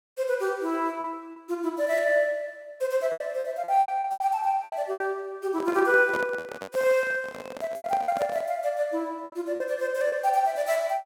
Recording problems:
lost packets; 9% of the sound replaced, filled with repeated pitch periods
microphone handling noise; from 5.5 to 8.5 s; peak -3 dB vs average level

